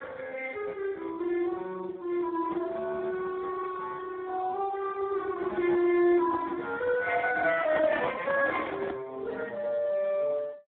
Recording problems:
telephone audio; 240 Hz to 2.1 kHz, Speex
handling noise; from 7.5 to 9 s; peak +1 dB vs average level

